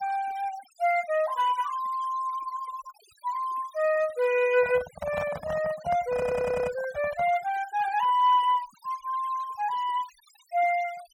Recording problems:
denoising artefacts; signal-to-artefact ratio 20 dB
microphone handling noise; from 4.5 to 7.5 s; peak -4 dB vs average level
stutter; at 6 s

